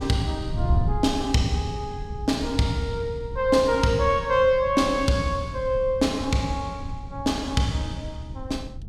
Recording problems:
wind on the microphone; below 110 Hz, SNR 10 dB

